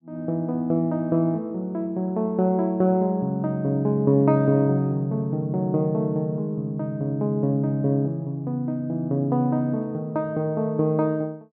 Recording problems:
treble missing; nothing above 6.5 kHz

